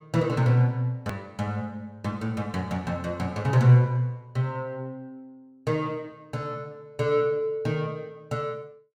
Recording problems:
hard cut with a click; at 1 s

